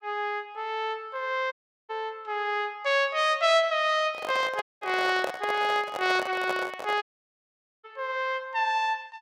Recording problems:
audio cutting out; at 1.5 s, at 4.5 s and at 7 s for 1 s
handling noise; from 4 to 7 s; peak +1 dB vs average level

